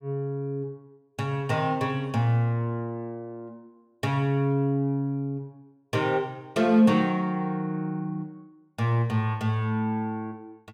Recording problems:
none

